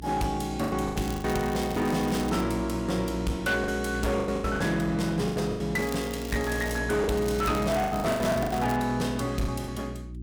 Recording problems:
distortion; hard clipping, uneven, signal-to-distortion ratio 11 dB
electrical hum; 60 Hz, harmonics up to 360 Hz, SNR 10 dB
lost packets; 11% of the sound replaced, filled with the last packet
crackle; from 1 to 2.5 s, from 6 to 7 s and from 7 to 9 s; loose cable, SNR 15 dB

